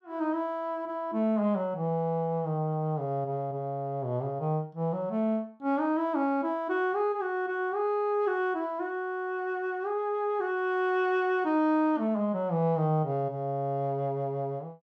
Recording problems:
none

